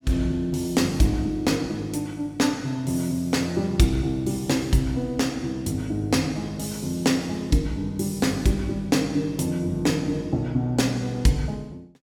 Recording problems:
none

